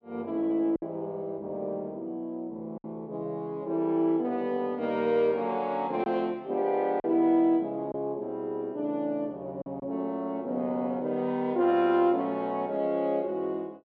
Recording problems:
packet loss; 1.9% of the sound replaced, filled with silence

